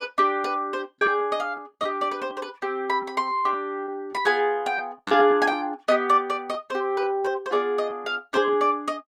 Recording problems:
lost packets; 5% of the sound replaced, filled with repeated pitch periods

